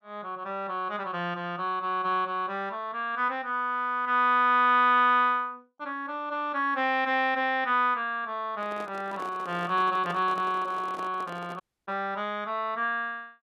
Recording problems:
microphone handling noise; from 8.5 to 12 s; peak -10 dB vs average level
dropout; at 12 s

